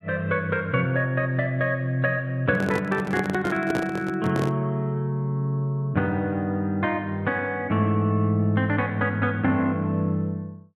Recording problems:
handling noise; from 2.5 to 4.5 s; peak 0 dB vs average level

